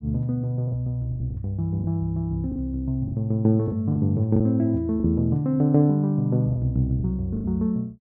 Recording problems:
lost packets; 8% of the sound replaced, filled with the last packet

